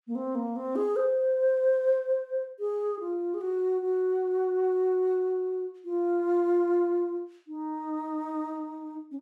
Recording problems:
none

